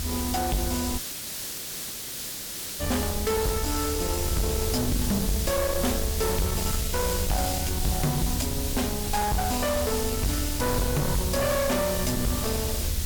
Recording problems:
distortion; soft clipping, signal-to-distortion ratio 6 dB
background hiss; SNR 4 dB
low-frequency rumble; below 120 Hz, SNR 5 dB
audio cutting out; at 1 s for 2 s

